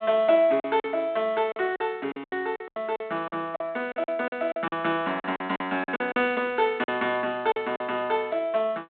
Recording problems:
phone line; 280 Hz to 4 kHz, G.726
lost packets; 12% of the sound replaced, filled with silence

